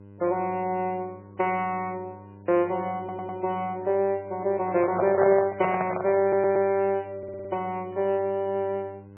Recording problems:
lossy codec; MP3, log-spectral distance 2 dB, nothing above 3 kHz
hum; 50 Hz, harmonics up to 1.1 kHz, SNR 20 dB
stutter; at 3 s, at 6 s and at 7 s
microphone handling noise; from 4.5 to 6.5 s; peak +4 dB vs average level

